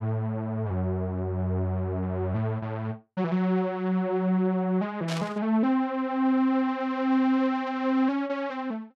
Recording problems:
static burst; at 5 s; peak -4 dB vs average level

